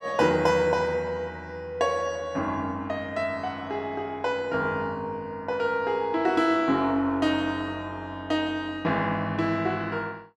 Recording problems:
none

